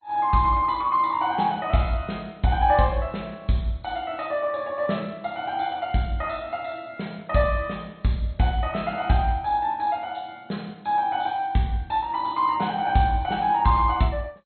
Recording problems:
lossy codec; MP2, log-spectral distance 3 dB, nothing above 4.2 kHz

